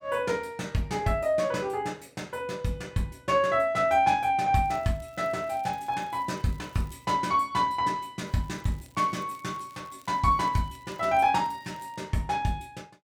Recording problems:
crackle; from 4.5 to 7 s and from 8 to 12 s; loose cable, SNR 30 dB

